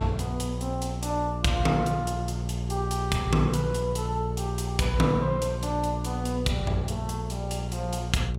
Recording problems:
hum; 60 Hz, harmonics up to 600 Hz, SNR 4 dB

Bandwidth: 16 kHz